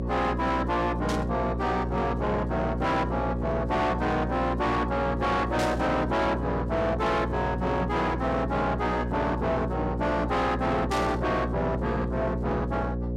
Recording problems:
distortion; soft clipping, signal-to-distortion ratio 7 dB
mains hum; 60 Hz, harmonics up to 660 Hz, SNR 4 dB
burst of static; at 1 s, at 5.5 s and at 11 s; peak -4 dB vs average level

